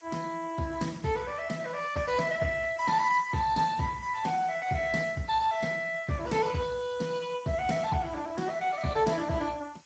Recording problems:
codec artefacts; Speex, log-spectral distance 6 dB, nothing above 7.3 kHz
background hiss; slope 0 dB per octave, SNR 27 dB

